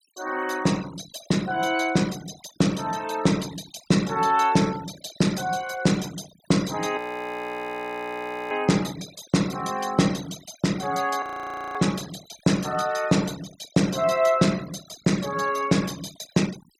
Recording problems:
noise reduction artefacts; signal-to-artefact ratio 17 dB
audio freezing; at 7 s for 1.5 s and at 11 s for 0.5 s

